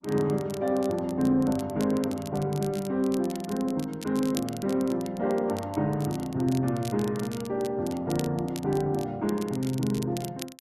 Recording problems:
lossy codec; Opus, log-spectral distance 2 dB
crackling; vinyl, SNR 17 dB

